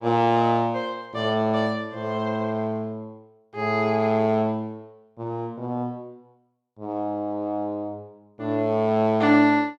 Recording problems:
none

